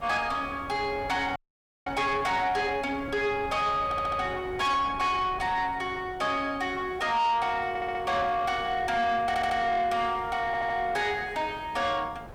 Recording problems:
distorted audio; soft clipping, signal-to-distortion ratio 11 dB
background hiss; slope -6 dB per octave, SNR 27 dB
wind on the microphone; below 770 Hz, SNR 17 dB
audio freezing; at 1.5 s for 0.5 s
audio stuttering; 4 times, first at 4 s

